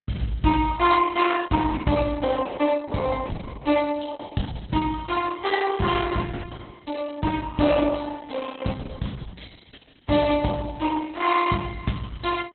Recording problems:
lossy compression; Opus, log-spectral distance 6 dB, nothing above 3.9 kHz

